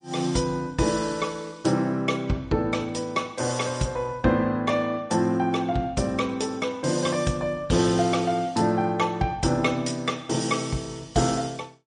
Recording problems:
lossy compression; MP3, log-spectral distance 3 dB, nothing above 9.2 kHz

